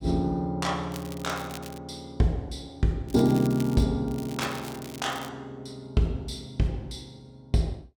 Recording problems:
crackling; at 1 s, at 3 s and from 4 to 5.5 s; loose cable, SNR 16 dB

